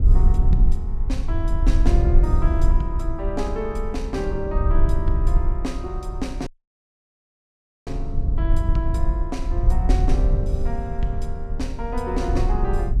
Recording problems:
rumble; below 60 Hz, SNR -6 dB
audio cutting out; at 6.5 s for 1.5 s

